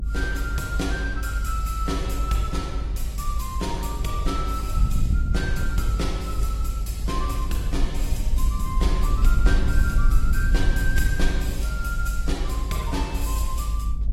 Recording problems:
lossy compression; AAC, log-spectral distance 2 dB, nothing above 15.5 kHz
low-frequency rumble; below 54 Hz, SNR -3 dB
wind on the microphone; below 82 Hz, SNR 2 dB

